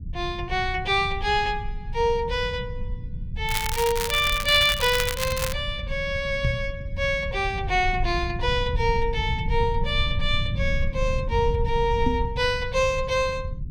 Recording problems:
rumble; below 96 Hz, SNR 7 dB
crackle; from 3.5 to 5.5 s; loose cable, SNR 5 dB
knock on the microphone; at 6.5 s and at 12 s; peak +2 dB vs average level

